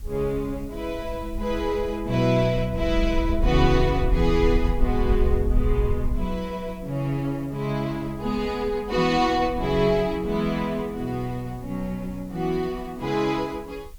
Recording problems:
background hiss; slope 0 dB per octave, SNR 29 dB
wind noise; below 62 Hz, SNR 5 dB

